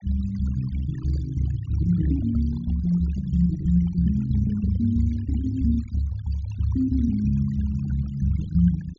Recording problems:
treble missing; nothing above 7.2 kHz
denoising artefacts; signal-to-artefact ratio 18 dB

